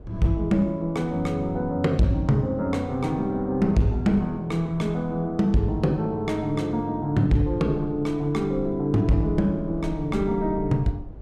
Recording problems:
distorted audio; hard clipping, signal-to-distortion ratio 12 dB
low-frequency rumble; below 96 Hz, SNR 18 dB

